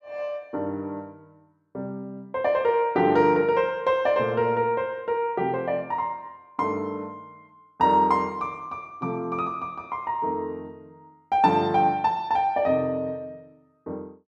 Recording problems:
none

